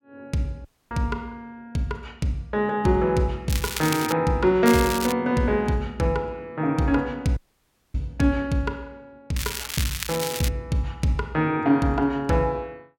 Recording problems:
dropout; at 0.5 s and at 7.5 s for 0.5 s
crackle; at 3.5 s, at 4.5 s and from 9.5 to 10 s; loose cable, SNR 6 dB

